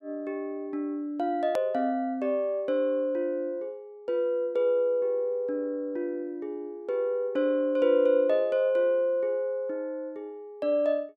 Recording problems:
edit click; at 1.5 s

